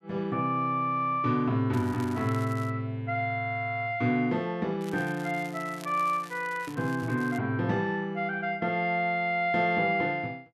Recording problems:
crackle; at 1.5 s and from 5 to 7.5 s; loose cable, SNR 21 dB

